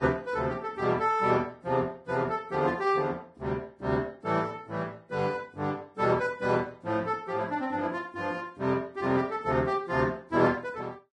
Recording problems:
lossy compression; Vorbis, log-spectral distance 2 dB

